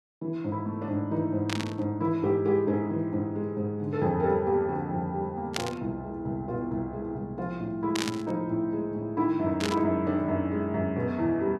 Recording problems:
burst of static; 4 times, first at 1.5 s; peak +3 dB vs average level

